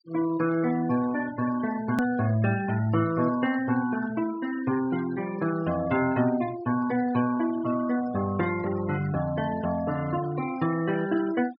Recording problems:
low-pass filter; nothing above 5.5 kHz
noise reduction artefacts; signal-to-artefact ratio 16 dB
edit click; at 2 s

